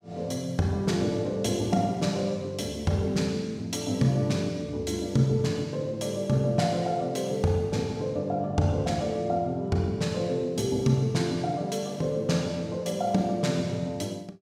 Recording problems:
none

